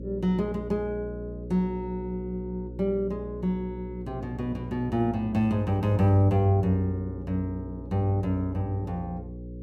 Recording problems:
electrical hum; 60 Hz, harmonics up to 540 Hz, SNR 11 dB

